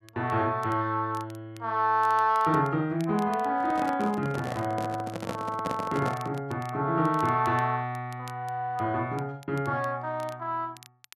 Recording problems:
crackling; vinyl, SNR 25 dB
microphone handling noise; from 3.5 to 6.5 s; peak -1 dB vs average level

